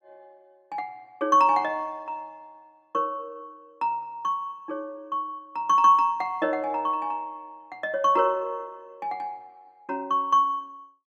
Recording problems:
none

